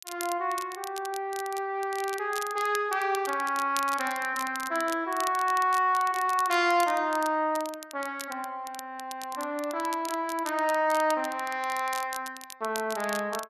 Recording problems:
crackle; vinyl, SNR 13 dB

